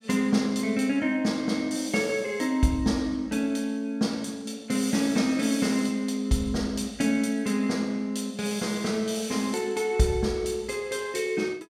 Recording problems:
none

